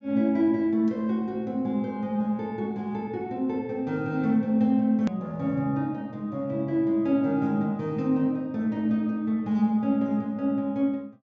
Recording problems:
low-pass filter; nothing above 8 kHz
hard cut with a click; at 5 s

